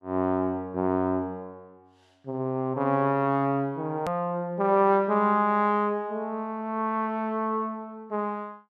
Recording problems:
hard cut with a click; at 4 s

